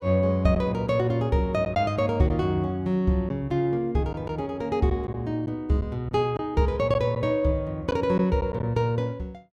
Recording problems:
lost packets; 3% of the sound replaced, filled with silence

